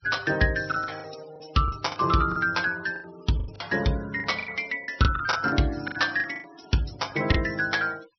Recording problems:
low-pass filter; nothing above 5.8 kHz
denoising artefacts; signal-to-artefact ratio 19 dB
packet loss; 13% of the sound replaced, filled with the last packet

